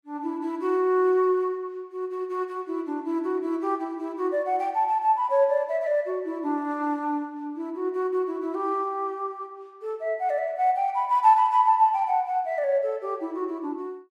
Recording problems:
none

